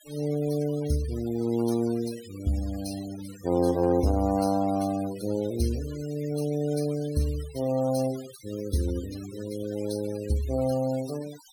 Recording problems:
noise reduction artefacts; signal-to-artefact ratio 16 dB

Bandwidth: 17.5 kHz